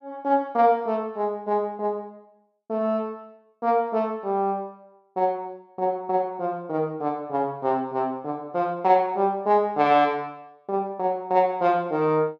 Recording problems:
none

